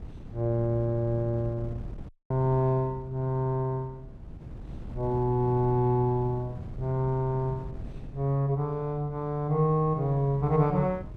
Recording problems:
wind on the microphone; below 160 Hz, SNR 15 dB
dropout; at 2 s

